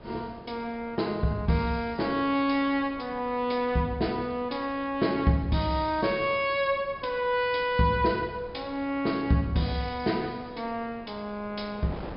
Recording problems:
low-pass filter; nothing above 5.5 kHz
wind on the microphone; below 720 Hz, SNR 21 dB

